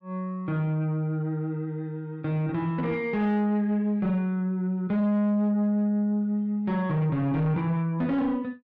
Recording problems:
distortion; soft clipping, signal-to-distortion ratio 11 dB

